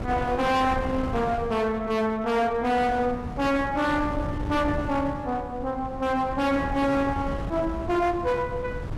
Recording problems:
distortion; hard clipping, uneven, signal-to-distortion ratio 7 dB
wind noise; below 300 Hz, SNR 9 dB

